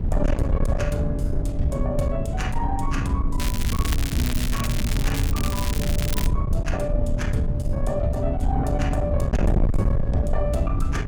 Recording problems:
distorted audio; soft clipping, signal-to-distortion ratio 7 dB
wind on the microphone; below 100 Hz, SNR -1 dB
crackling; from 3.5 to 6.5 s; loose cable, SNR 4 dB

